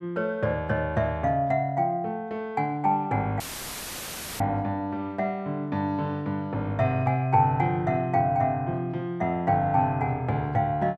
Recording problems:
dropout; at 3.5 s for 1 s; filled with static

